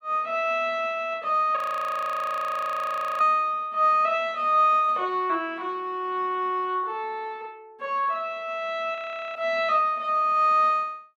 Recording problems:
audio freezing; at 1.5 s for 1.5 s and at 9 s

